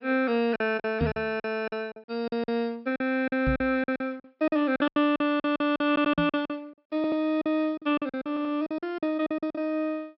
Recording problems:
low-pass filter; nothing above 5.4 kHz
lost packets; 16% of the sound replaced, filled with silence
microphone bump; at 1 s, at 3.5 s and at 6 s; peak +3 dB vs average level
audio stuttering; at 6 s, at 7 s and at 8.5 s

